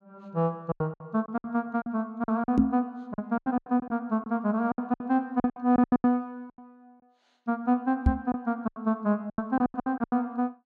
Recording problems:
packet loss; 16% of the sound replaced, filled with silence
knock on the microphone; at 2.5 s and at 8 s; peak +10 dB vs average level

